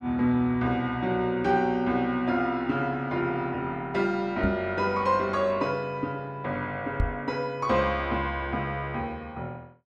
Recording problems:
microphone thump; at 4.5 s and at 7 s; peak +5 dB vs average level

